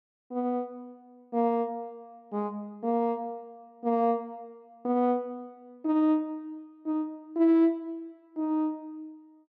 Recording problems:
none

